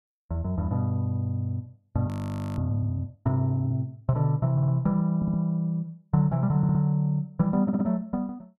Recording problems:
frozen audio; at 2 s for 0.5 s
stutter; 4 times, first at 4.5 s

